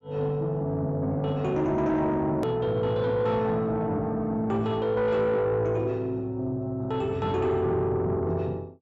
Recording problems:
treble missing; nothing above 8 kHz
distortion; soft clipping, signal-to-distortion ratio 12 dB
click at an edit; at 2.5 s

